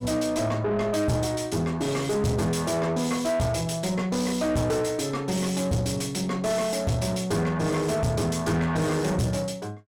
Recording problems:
distorted audio; soft clipping, signal-to-distortion ratio 7 dB

